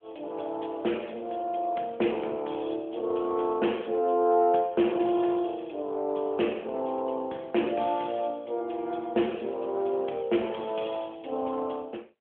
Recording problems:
phone line; 220 Hz to 3.4 kHz, AMR-NB

